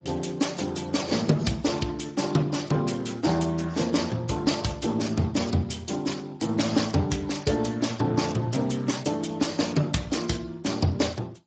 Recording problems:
codec artefacts; AAC, then Speex, log-spectral distance 6 dB, nothing above 7.6 kHz

